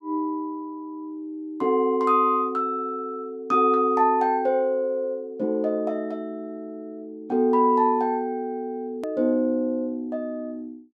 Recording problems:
hard cut with a click; at 9 s

